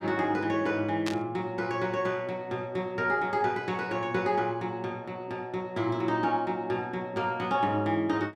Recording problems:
static burst; at 1 s; peak -1 dB vs average level

